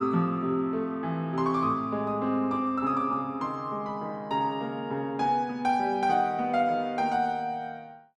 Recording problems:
none

